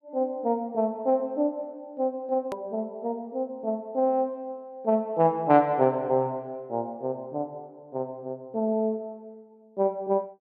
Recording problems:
hard cut with a click; at 2.5 s

